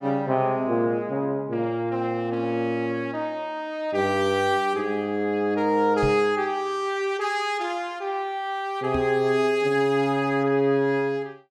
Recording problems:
knock on the microphone; at 6 s and at 9 s; peak -1 dB vs average level

